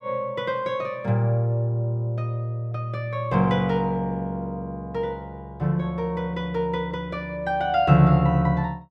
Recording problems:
none

